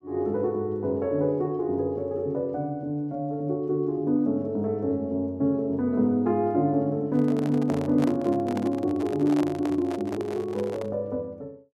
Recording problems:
microphone handling noise; from 7 to 11 s; peak -3 dB vs average level

